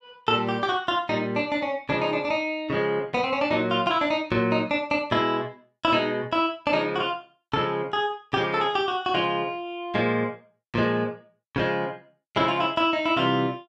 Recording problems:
none

